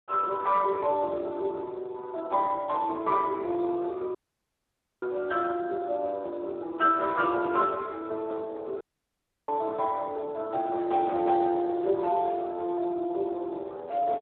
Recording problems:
phone line; 300 Hz to 2 kHz, Speex
dropout; at 4 s for 1 s and at 9 s for 0.5 s

